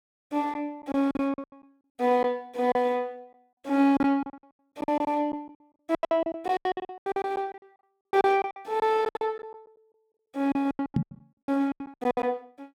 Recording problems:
lost packets; 19% of the sound replaced, filled with silence
microphone bump; at 11 s; peak +5 dB vs average level

